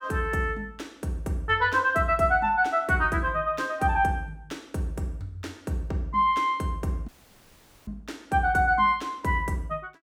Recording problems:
audio cutting out; at 7 s for 1 s

